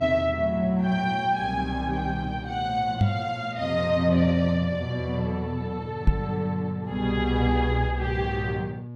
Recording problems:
electrical hum; 60 Hz, harmonics up to 840 Hz, SNR 14 dB
microphone thump; at 3 s and at 6 s; peak +9 dB vs average level

